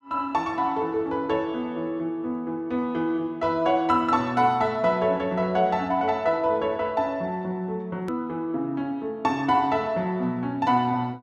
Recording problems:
click at an edit; at 8 s

